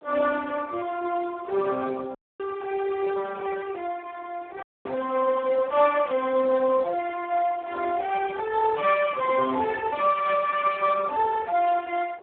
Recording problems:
telephone audio; 300 Hz to 2.6 kHz, Speex
wind on the microphone; below 810 Hz, SNR 24 dB
dropout; at 2 s and at 4.5 s

